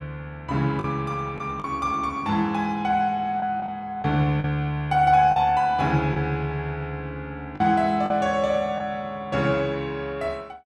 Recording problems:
packet loss; 4% of the sound replaced, filled with the last packet

